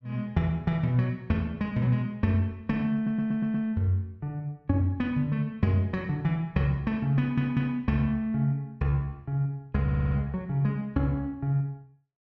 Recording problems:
audio stuttering; at 3 s, at 7 s and at 10 s

